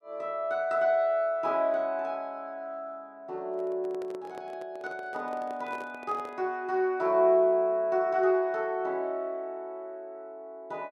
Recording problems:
microphone handling noise; from 3.5 to 6.5 s; peak -12 dB vs average level

